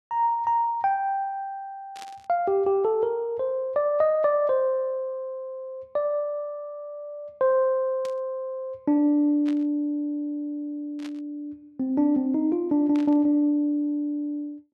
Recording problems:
burst of static; 5 times, first at 2 s; peak -13 dB vs average level

